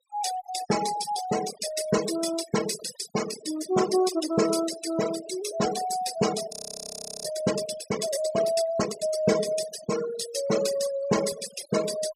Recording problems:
noise reduction artefacts; signal-to-artefact ratio 8 dB
audio freezing; at 6.5 s for 0.5 s

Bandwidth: 14.5 kHz